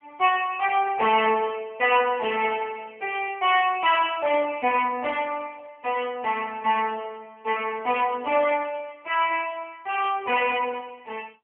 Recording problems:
telephone audio; 260 Hz to 3.1 kHz, AMR-NB

